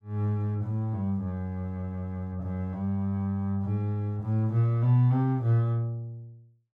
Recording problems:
none

